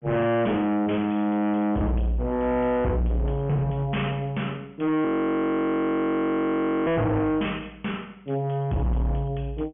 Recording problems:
treble cut off; nothing above 3.3 kHz
distorted audio; hard clipping, signal-to-distortion ratio 6 dB
audio freezing; at 5 s for 2 s

